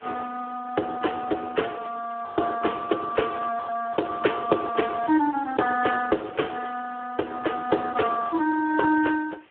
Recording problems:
phone line; 280 Hz to 2.2 kHz, Speex
background hiss; SNR 29 dB

